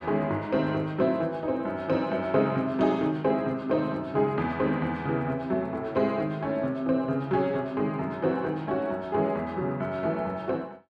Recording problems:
none

